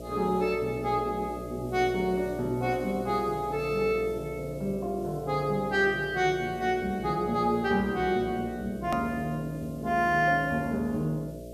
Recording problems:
hum; 60 Hz, harmonics up to 660 Hz, SNR 13 dB
background hiss; slope +6 dB per octave, SNR 27 dB
click at an edit; at 9 s

